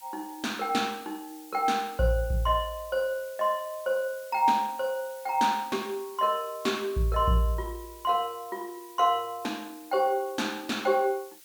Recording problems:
background hiss; slope +3 dB per octave, SNR 20 dB

